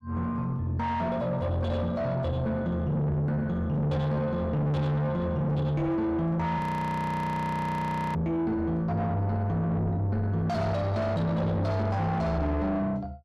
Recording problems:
distorted audio; soft clipping, signal-to-distortion ratio 5 dB
audio freezing; at 6.5 s for 1.5 s

